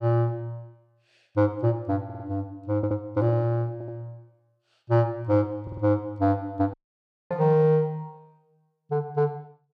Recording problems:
stutter; 4 times, first at 2 s
dropout; at 6.5 s for 0.5 s

